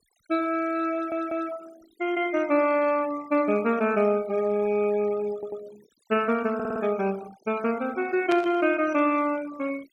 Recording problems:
noise reduction artefacts; signal-to-artefact ratio 20 dB
stutter; at 1 s, at 5.5 s and at 6.5 s
burst of static; at 8.5 s; peak -4 dB vs average level

